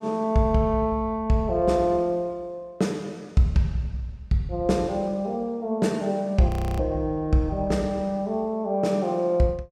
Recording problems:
frozen audio; at 6.5 s

